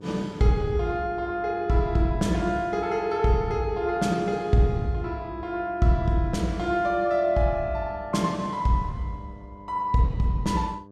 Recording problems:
hum; 50 Hz, harmonics up to 1.2 kHz, SNR 21 dB

